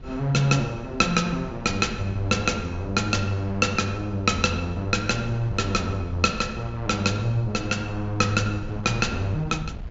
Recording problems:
treble missing; nothing above 7.5 kHz
wind on the microphone; below 130 Hz, SNR 14 dB

